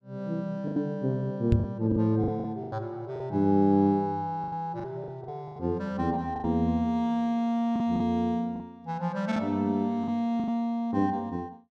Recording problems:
packet loss; 9% of the sound replaced, filled with the last packet
knock on the microphone; at 1.5 s; peak +9 dB vs average level

